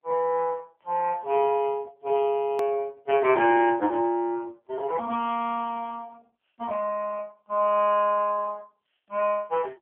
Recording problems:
telephone audio; 260 Hz to 3.2 kHz, AMR-NB
edit click; at 2.5 s

